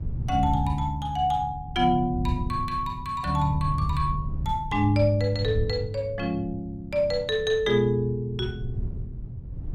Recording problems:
wind noise; below 120 Hz, SNR 10 dB

